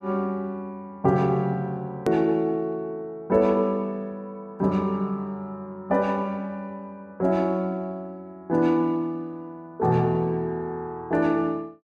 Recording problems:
click at an edit; at 2 s

